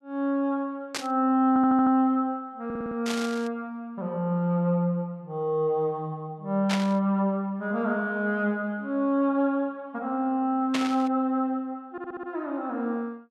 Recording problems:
burst of static; 4 times, first at 1 s; peak +1 dB vs average level
stutter; at 1.5 s, at 2.5 s and at 12 s

